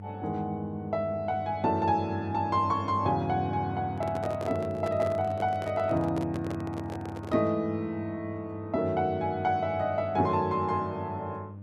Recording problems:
electrical hum; 50 Hz, harmonics up to 600 Hz, SNR 11 dB
handling noise; from 4 to 7.5 s; peak -4 dB vs average level

